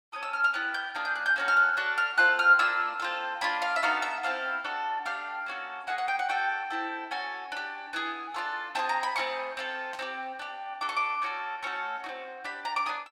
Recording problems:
static burst; at 10 s; peak -12 dB vs average level

